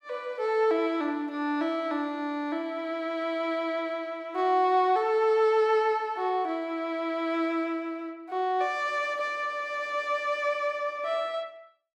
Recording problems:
none

